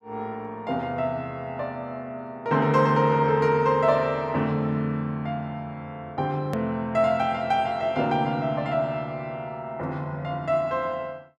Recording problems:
click at an edit; at 6.5 s

